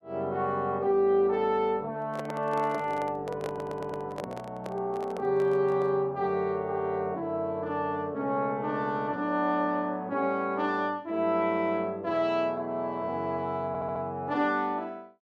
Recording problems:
microphone handling noise; from 2 to 6 s; peak -4 dB vs average level
audio stuttering; at 3.5 s and at 14 s

